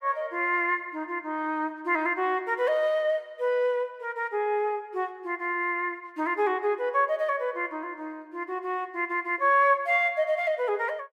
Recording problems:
none

